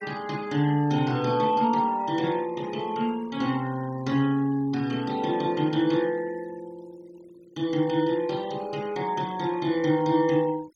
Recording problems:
denoising artefacts; signal-to-artefact ratio 23 dB

